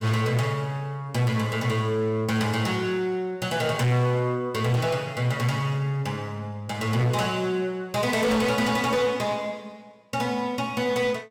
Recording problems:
distorted audio; hard clipping, signal-to-distortion ratio 11 dB

